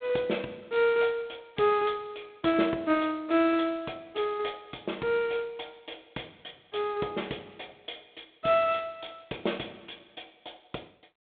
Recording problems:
phone line; 260 Hz to 3.7 kHz, G.726

